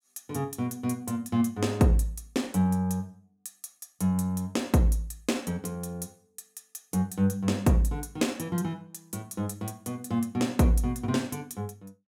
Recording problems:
none

